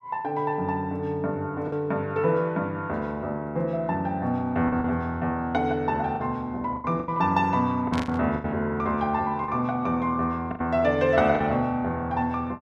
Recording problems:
lost packets; 5% of the sound replaced, filled with the last packet
static burst; at 8 s; peak -4 dB vs average level

